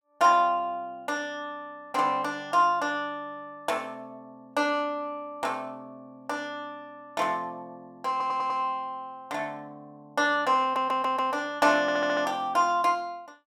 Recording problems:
audio stuttering; at 8 s, at 11 s and at 12 s

